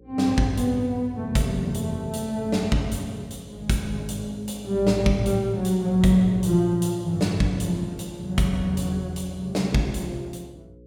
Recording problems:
hum; 60 Hz, harmonics up to 540 Hz, SNR 25 dB

